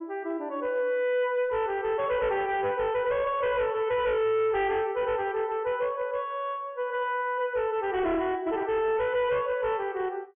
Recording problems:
treble cut off; nothing above 3.3 kHz
distorted audio; hard clipping, signal-to-distortion ratio 10 dB

